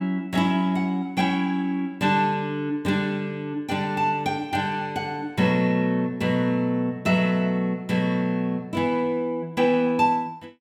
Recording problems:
none

